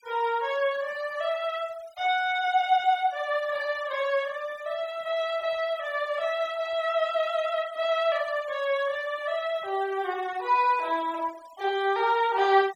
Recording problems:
denoising artefacts; signal-to-artefact ratio 21 dB

